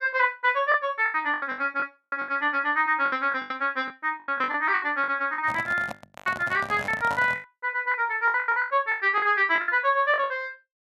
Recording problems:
packet loss; 17% of the sound replaced, filled with the last packet
handling noise; from 5.5 to 7.5 s; peak -7 dB vs average level

